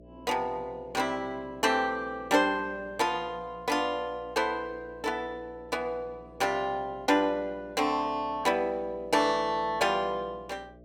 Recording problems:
hum; 60 Hz, harmonics up to 660 Hz, SNR 23 dB

